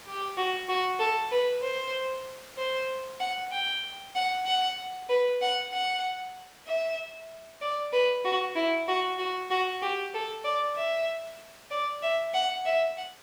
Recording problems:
hiss; slope -2 dB per octave, SNR 21 dB

